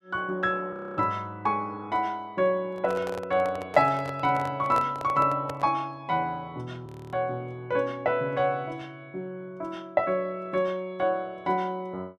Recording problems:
frozen audio; at 0.5 s and at 7 s
microphone handling noise; from 2.5 to 5.5 s; peak -1 dB vs average level

